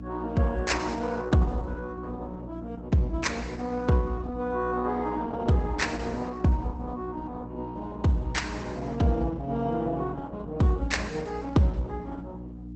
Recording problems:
lossy compression; Opus, log-spectral distance 3 dB, nothing above 8 kHz
hum; 60 Hz, harmonics up to 300 Hz, SNR 11 dB

